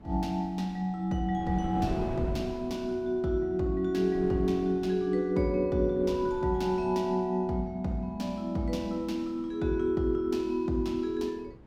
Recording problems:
wind on the microphone; below 350 Hz, SNR 15 dB

